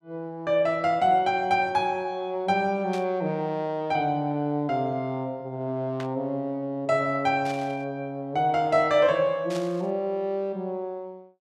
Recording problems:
burst of static; 4 times, first at 3 s; peak -8 dB vs average level

